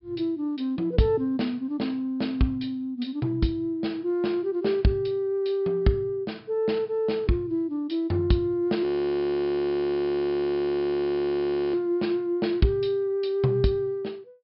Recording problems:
treble missing; nothing above 5.1 kHz
audio freezing; at 9 s for 3 s

